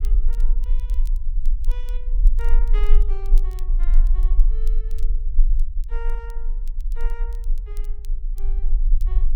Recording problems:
rumble; below 34 Hz, strongest tone 20 Hz, SNR -19 dB
crackle; vinyl, SNR 12 dB

